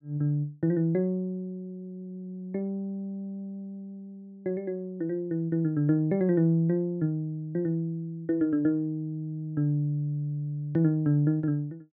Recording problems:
none

